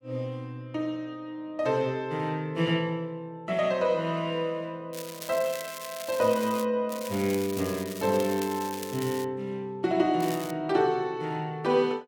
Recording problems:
crackling; from 5 to 6.5 s, from 7 to 9.5 s and at 10 s; loose cable, SNR 12 dB

